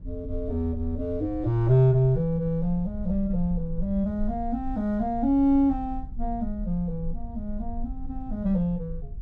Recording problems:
rumble; below 50 Hz, strongest tone 24 Hz, SNR 12 dB

